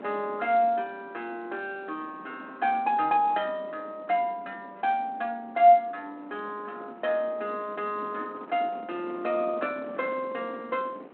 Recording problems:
telephone audio; 220 Hz to 3.3 kHz, G.726
wind on the microphone; below 680 Hz, SNR 19 dB

